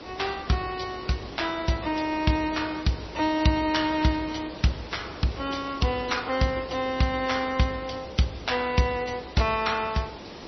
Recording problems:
lossy codec; MP3, log-spectral distance 7 dB, nothing above 5.8 kHz
background hiss; SNR 14 dB

